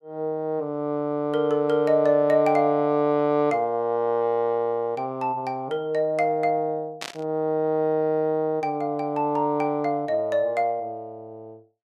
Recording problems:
burst of static; at 7 s; peak -5 dB vs average level

